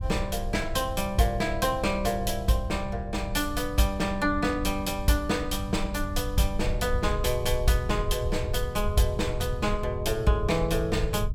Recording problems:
rumble; below 84 Hz, SNR 7 dB

